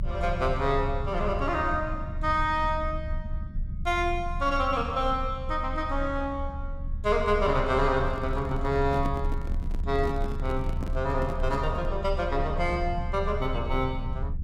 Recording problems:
low-frequency rumble; below 72 Hz, strongest tone 26 Hz, SNR 6 dB
microphone handling noise; from 8 to 12 s; peak -4 dB vs average level

